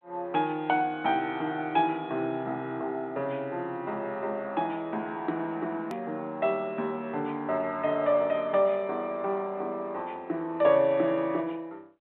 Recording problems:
telephone audio; 190 Hz to 3.8 kHz, G.726
click at an edit; at 6 s

